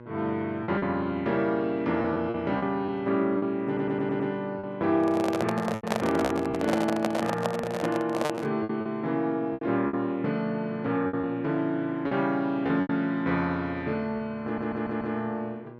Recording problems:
electrical hum; 60 Hz, harmonics up to 2 kHz, SNR 18 dB
packet loss; 7% of the sound replaced, filled with repeated pitch periods
audio stuttering; at 3.5 s and at 14 s
microphone handling noise; from 5 to 8.5 s; peak +4 dB vs average level

